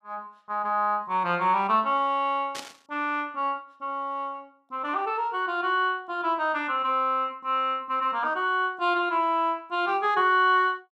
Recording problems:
burst of static; at 2.5 s; peak -6 dB vs average level

